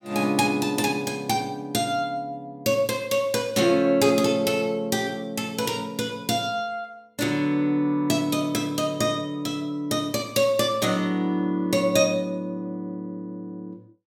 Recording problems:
none

